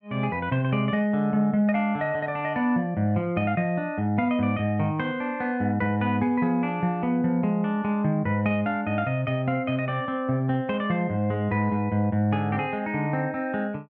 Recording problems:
none

